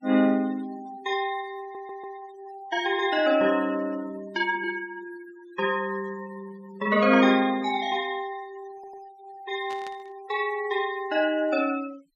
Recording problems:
noise reduction artefacts; signal-to-artefact ratio 19 dB
audio stuttering; at 1.5 s and at 8.5 s
static burst; at 9.5 s; peak -14 dB vs average level

